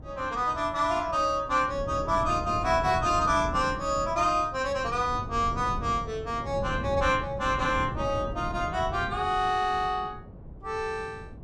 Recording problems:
wind on the microphone; below 240 Hz, SNR 11 dB

